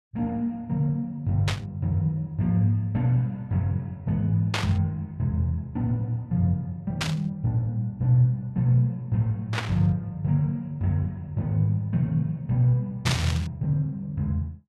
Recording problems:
static burst; 5 times, first at 1.5 s; peak +3 dB vs average level

